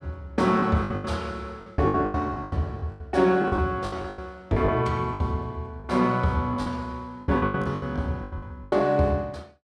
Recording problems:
packet loss; 17% of the sound replaced, filled with the last packet

